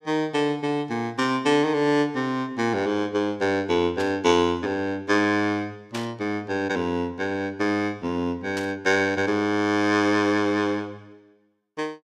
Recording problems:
burst of static; at 4 s, at 6 s and at 8.5 s; peak -6 dB vs average level

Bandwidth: 15 kHz